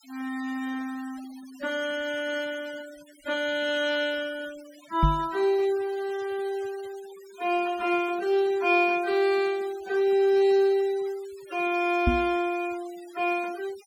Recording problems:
denoising artefacts; signal-to-artefact ratio 21 dB
microphone thump; at 5 s and at 12 s; peak +6 dB vs average level

